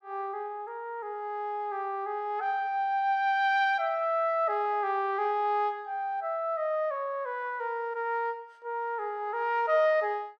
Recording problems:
none

